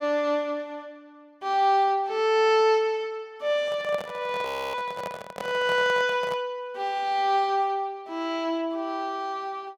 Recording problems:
handling noise; from 3.5 to 6.5 s; peak -5 dB vs average level
audio freezing; at 4.5 s

